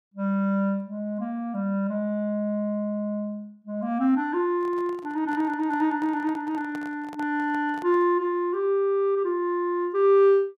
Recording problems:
microphone handling noise; from 4.5 to 8 s; peak -12 dB vs average level

